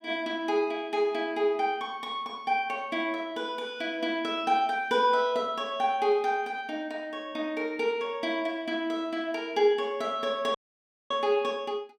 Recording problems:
dropout; at 11 s for 0.5 s

